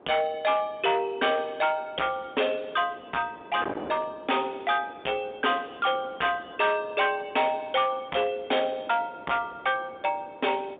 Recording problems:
phone line; 300 Hz to 3.7 kHz, G.711
distorted audio; hard clipping, uneven, signal-to-distortion ratio 6 dB
wind on the microphone; below 930 Hz, SNR 18 dB

